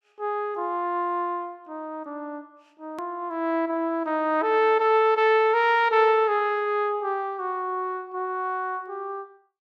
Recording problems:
click at an edit; at 3 s

